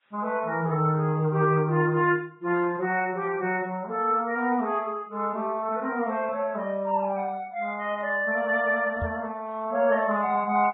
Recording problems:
codec artefacts; AAC, then Vorbis, log-spectral distance 2 dB
microphone thump; at 9 s; peak -2 dB vs average level

